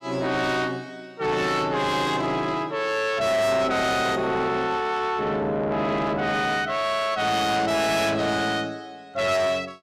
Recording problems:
distortion; soft clipping, signal-to-distortion ratio 8 dB

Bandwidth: 14.5 kHz